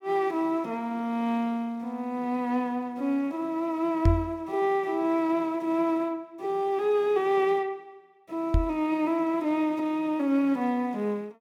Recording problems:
microphone bump; at 4 s and at 8.5 s; peak +8 dB vs average level

